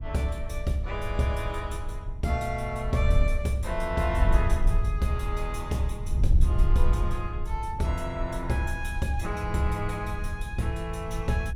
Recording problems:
wind noise; below 72 Hz, SNR 1 dB

